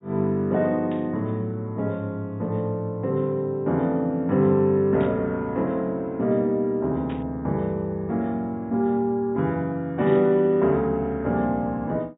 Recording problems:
low-pass filter; nothing above 4 kHz
burst of static; 4 times, first at 1 s; peak -15 dB vs average level

